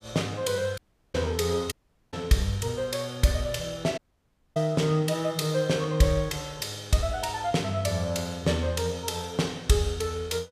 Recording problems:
audio cutting out; at 1 s, at 1.5 s and at 4 s for 0.5 s

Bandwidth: 15 kHz